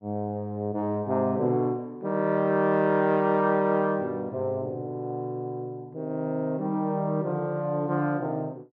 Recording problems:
none

